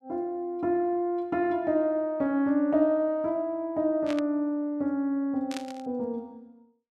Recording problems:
burst of static; at 4 s and at 5.5 s; peak -6 dB vs average level

